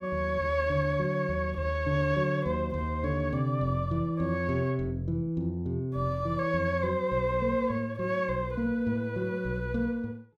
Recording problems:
none

